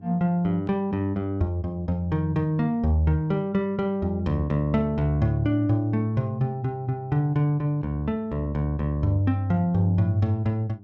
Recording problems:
hum; 50 Hz, harmonics up to 700 Hz, SNR 23 dB

